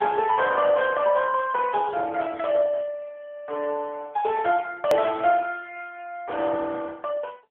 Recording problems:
telephone audio; 340 Hz to 3.5 kHz, AMR-NB
edit click; at 5 s

